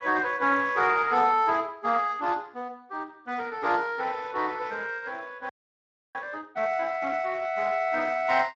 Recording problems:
lossy codec; Speex, log-spectral distance 4 dB
audio freezing; at 5.5 s for 0.5 s

